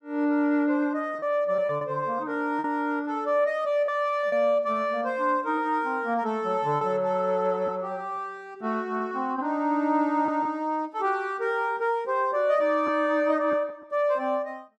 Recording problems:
packet loss; 3% of the sound replaced, filled with repeated pitch periods

